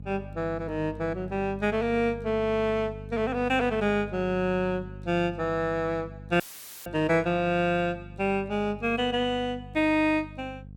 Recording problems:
hum; 50 Hz, harmonics up to 500 Hz, SNR 15 dB
dropout; at 6.5 s; filled with static

